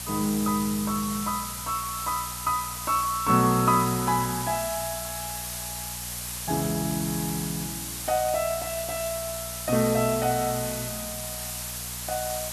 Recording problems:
hum; 60 Hz, harmonics up to 660 Hz, SNR 16 dB
hiss; SNR 5 dB

